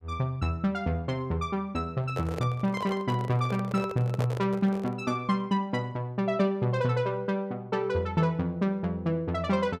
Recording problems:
microphone handling noise; from 2 to 5 s; peak -2 dB vs average level

